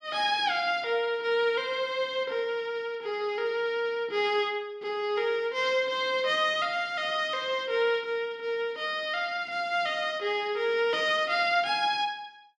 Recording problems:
none

